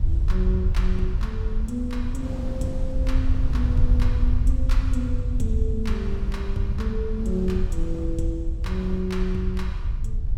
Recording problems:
rumble; below 68 Hz, SNR -3 dB
wind noise; below 180 Hz, SNR 8 dB

